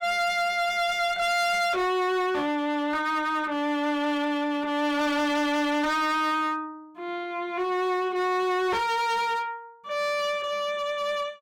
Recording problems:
distortion; hard clipping, signal-to-distortion ratio 7 dB

